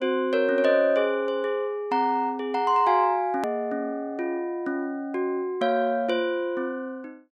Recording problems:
click at an edit; at 3.5 s

